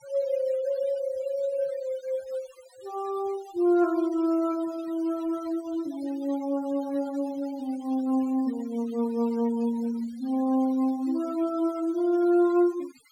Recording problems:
noise reduction artefacts; signal-to-artefact ratio 22 dB

